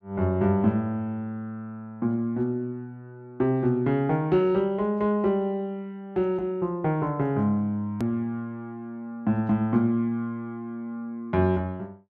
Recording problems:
click at an edit; at 8 s

